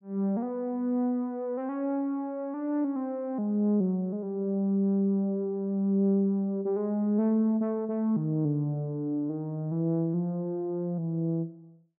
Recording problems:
none

